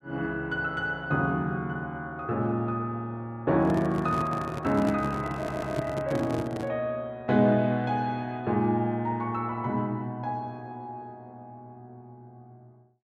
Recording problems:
microphone handling noise; from 3.5 to 6.5 s; peak 0 dB vs average level
audio stuttering; at 5.5 s

